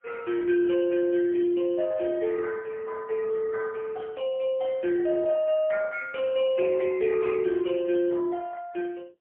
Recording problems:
telephone audio; 280 Hz to 3.1 kHz, AMR-NB, then MP3

